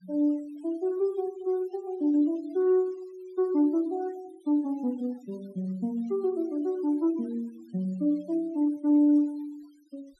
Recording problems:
denoising artefacts; signal-to-artefact ratio 28 dB

